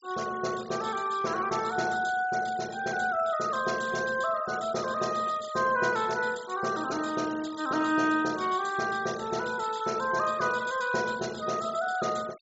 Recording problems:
treble missing; nothing above 8 kHz
noise reduction artefacts; signal-to-artefact ratio 18 dB

